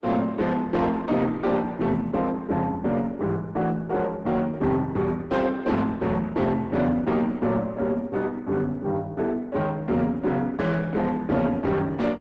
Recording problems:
lossy codec; Opus, log-spectral distance 2 dB
distorted audio; soft clipping, signal-to-distortion ratio 10 dB

